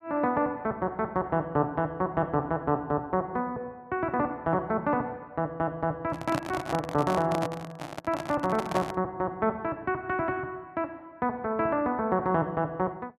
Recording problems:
microphone handling noise; from 6 to 9 s; peak +2 dB vs average level

